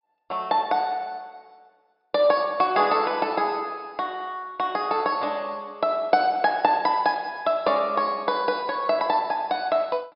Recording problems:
low-pass filter; nothing above 5.5 kHz

